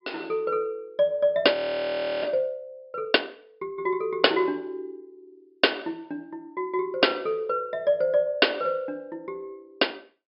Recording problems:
low-pass filter; nothing above 5.5 kHz
frozen audio; at 1.5 s for 0.5 s

